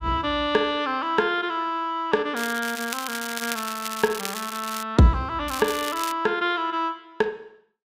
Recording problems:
crackle; from 2.5 to 5 s and at 5.5 s; loose cable, SNR 8 dB

